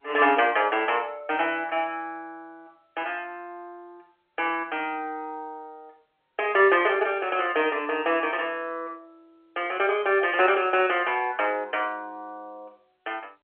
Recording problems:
phone line; 320 Hz to 3.2 kHz, G.711

